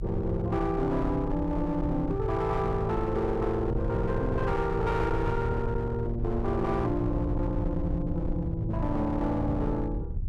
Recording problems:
distorted audio; hard clipping, uneven, signal-to-distortion ratio 10 dB
low-frequency rumble; below 94 Hz, SNR 6 dB

